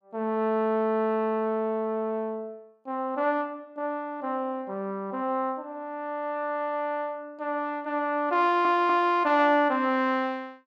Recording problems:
audio stuttering; at 8.5 s

